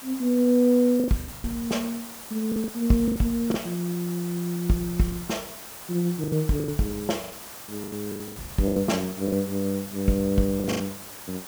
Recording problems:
hiss; slope -2 dB per octave, SNR 13 dB
lost packets; 12% of the sound replaced, filled with the last packet

